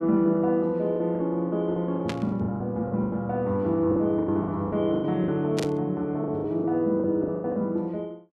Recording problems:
lost packets; 14% of the sound replaced, filled with the last packet
burst of static; at 2 s and at 5.5 s; peak -4 dB vs average level

